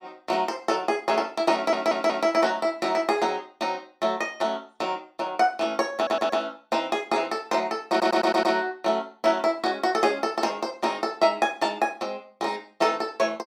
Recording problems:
audio stuttering; at 1.5 s, at 6 s and at 8 s

